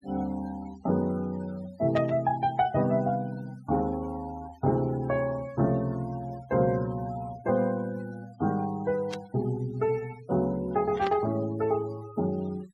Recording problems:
denoising artefacts; signal-to-artefact ratio 21 dB
static burst; at 2 s, at 9 s and at 11 s; peak -5 dB vs average level

